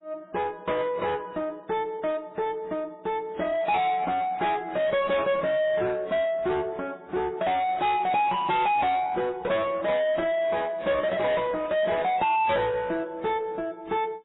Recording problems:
lossy compression; AAC, then MP3, log-spectral distance 2 dB, nothing above 3.8 kHz
distortion; soft clipping, signal-to-distortion ratio 6 dB

